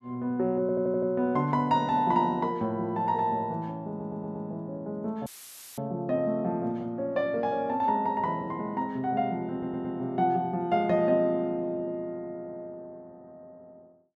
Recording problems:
audio stuttering; at 0.5 s, at 4 s and at 9.5 s
dropout; at 5.5 s for 0.5 s; filled with static

